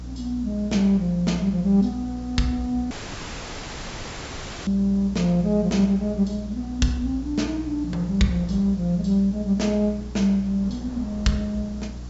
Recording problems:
treble missing; nothing above 8 kHz
hum; 60 Hz, harmonics up to 300 Hz, SNR 14 dB
background hiss; SNR 24 dB
wind noise; below 560 Hz, SNR 26 dB
dropout; at 3 s for 2 s

